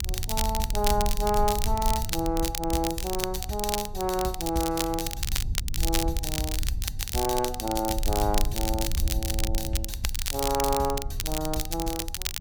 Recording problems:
rumble; below 68 Hz, SNR 5 dB
crackling; vinyl, SNR 3 dB

